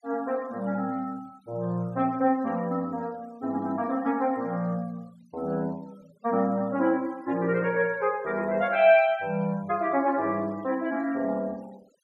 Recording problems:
noise reduction artefacts; signal-to-artefact ratio 28 dB

